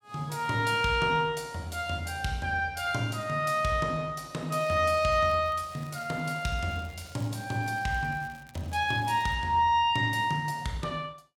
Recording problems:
crackle; from 4.5 to 9.5 s; loose cable, SNR 27 dB

